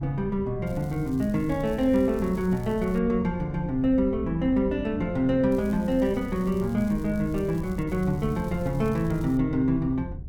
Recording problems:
wind on the microphone; below 110 Hz, SNR 13 dB
crackle; from 0.5 to 3 s, from 5.5 to 8 s and from 8 to 9.5 s; loose cable, SNR 27 dB

